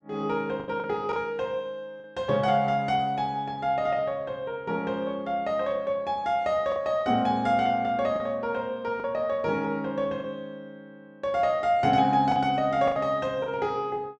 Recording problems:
packet loss; 4% of the sound replaced, filled with the last packet

